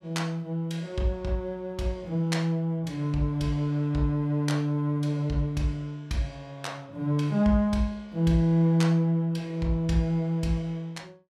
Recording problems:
none

